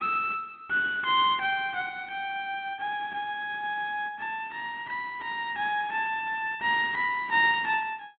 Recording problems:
treble missing; nothing above 4 kHz

